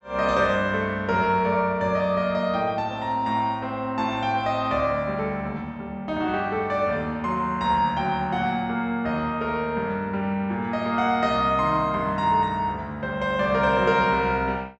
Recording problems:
treble cut off; nothing above 8 kHz

